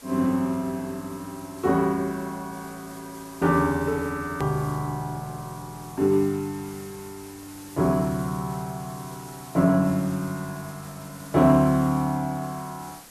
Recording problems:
background hiss; slope -2 dB per octave, SNR 20 dB
click at an edit; at 4.5 s

